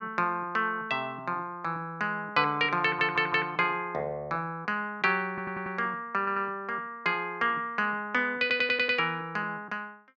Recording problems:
audio stuttering; 4 times, first at 3 s

